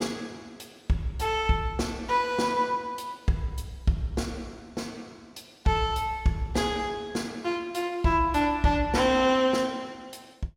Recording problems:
none

